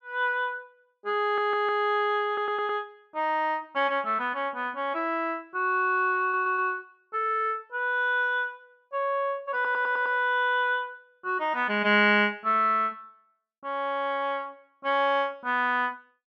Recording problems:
stutter; 4 times, first at 1 s

